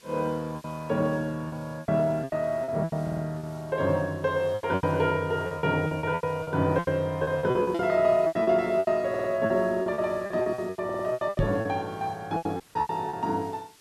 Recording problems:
hiss; SNR 27 dB
lost packets; 16% of the sound replaced, filled with repeated pitch periods
stutter; at 3 s, at 9 s and at 11 s
microphone bump; at 11 s; peak +5 dB vs average level
dropout; at 13 s

